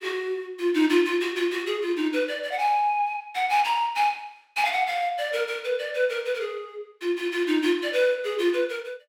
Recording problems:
none

